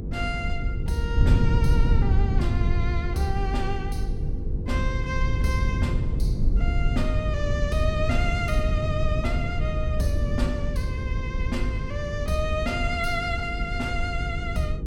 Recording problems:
electrical hum; 50 Hz, harmonics up to 500 Hz, SNR 7 dB
wind noise; below 100 Hz, SNR -3 dB

